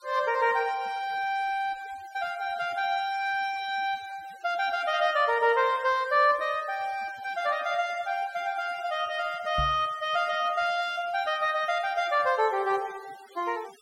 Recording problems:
denoising artefacts; signal-to-artefact ratio 22 dB
microphone bump; at 9.5 s; peak -2 dB vs average level

